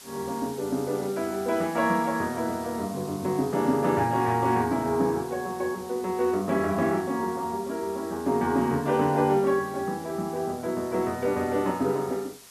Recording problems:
hiss; slope 0 dB per octave, SNR 19 dB

